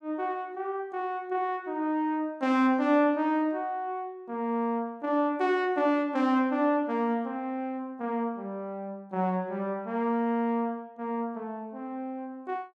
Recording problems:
none

